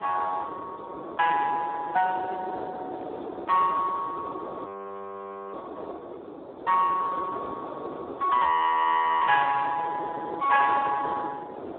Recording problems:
telephone audio; 220 Hz to 2 kHz, Speex
wind noise; below 700 Hz, SNR 11 dB
audio freezing; at 4.5 s for 1 s and at 8.5 s for 1 s

